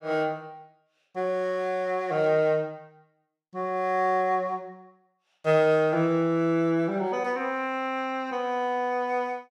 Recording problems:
none

